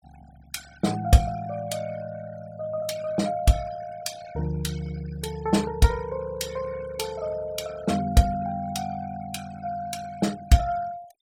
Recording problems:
denoising artefacts; signal-to-artefact ratio 18 dB

